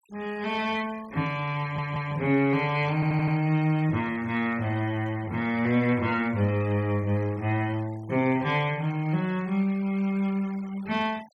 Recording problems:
noise reduction artefacts; signal-to-artefact ratio 23 dB
stutter; at 1.5 s and at 3 s

